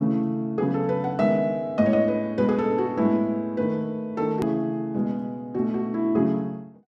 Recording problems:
hard cut with a click; at 4.5 s

